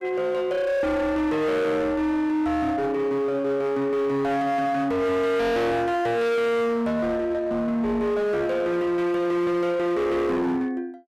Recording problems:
distortion; hard clipping, signal-to-distortion ratio 7 dB

